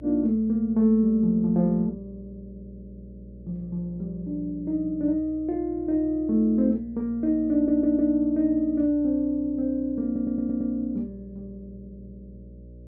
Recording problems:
hum; 60 Hz, harmonics up to 600 Hz, SNR 21 dB
stutter; at 7.5 s and at 10 s

